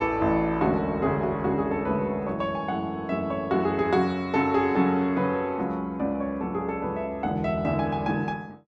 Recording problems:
none

